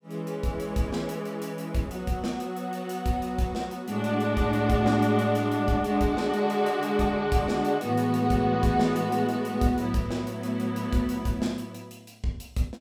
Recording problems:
none

